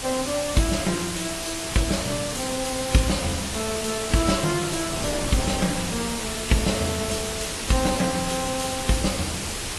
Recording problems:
lossy codec; AAC, log-spectral distance 14 dB, nothing above 12 kHz
background hiss; slope +1 dB per octave, SNR 3 dB
wind on the microphone; below 710 Hz, SNR 12 dB

